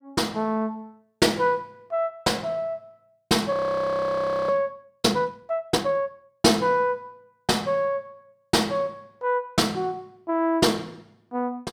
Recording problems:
audio freezing; at 3.5 s for 1 s

